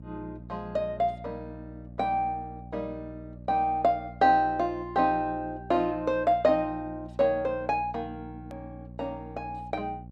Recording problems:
electrical hum; 60 Hz, harmonics up to 600 Hz, SNR 17 dB
click at an edit; at 8.5 s

